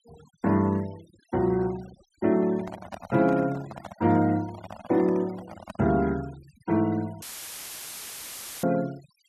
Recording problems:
noise reduction artefacts; signal-to-artefact ratio 23 dB
microphone handling noise; from 2.5 to 6 s; peak -7 dB vs average level
audio cutting out; at 7 s for 1.5 s; filled with static

